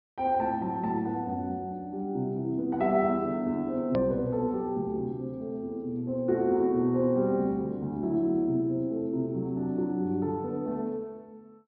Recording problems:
treble missing; nothing above 5.5 kHz
edit click; at 4 s

